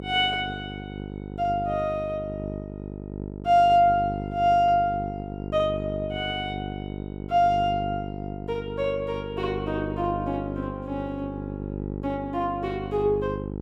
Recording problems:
hum; 50 Hz, harmonics up to 950 Hz, SNR 9 dB

